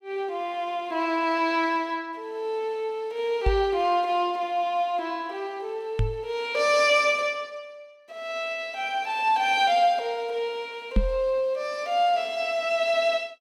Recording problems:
microphone thump; at 3.5 s, at 6 s and at 11 s; peak +5 dB vs average level

